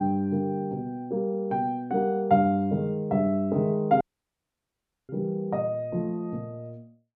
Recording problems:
dropout; at 4 s for 1 s

